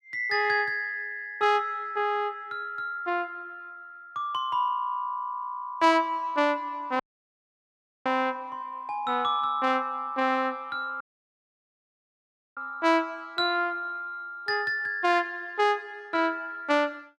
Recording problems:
audio cutting out; at 7 s for 1 s and at 11 s for 1.5 s

